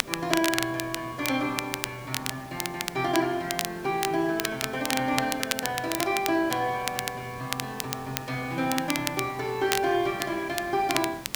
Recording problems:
background hiss; slope -4 dB per octave, SNR 16 dB
crackling; vinyl, SNR 4 dB

